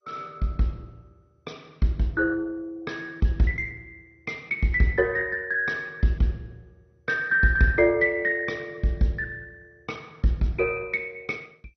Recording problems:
lossy codec; MP2, log-spectral distance 2 dB, nothing above 5.3 kHz

